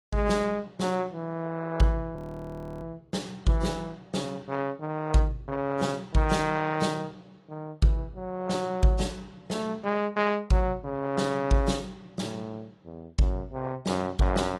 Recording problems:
lossy compression; AAC, log-spectral distance 3 dB
frozen audio; at 2 s for 0.5 s

